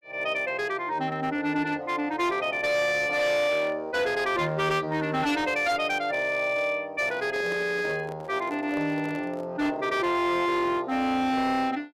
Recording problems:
distortion; hard clipping, signal-to-distortion ratio 11 dB
handling noise; from 7 to 9.5 s; peak -7 dB vs average level

